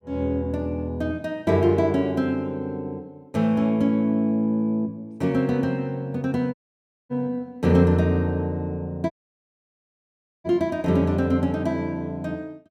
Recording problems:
dropout; at 6.5 s for 0.5 s and at 9 s for 1.5 s

